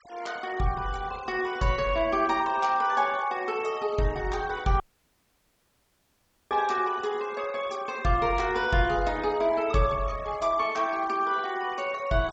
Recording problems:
low-pass filter; nothing above 8 kHz
noise reduction artefacts; signal-to-artefact ratio 20 dB
dropout; at 5 s for 1.5 s

